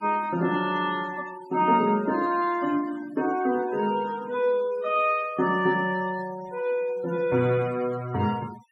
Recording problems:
noise reduction artefacts; signal-to-artefact ratio 20 dB

